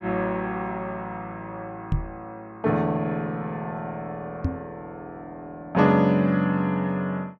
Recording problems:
microphone thump; at 2 s and at 4.5 s; peak +4 dB vs average level

